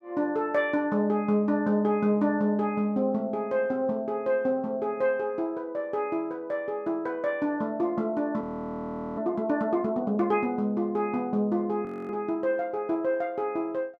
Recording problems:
audio freezing; at 8.5 s for 1 s and at 12 s

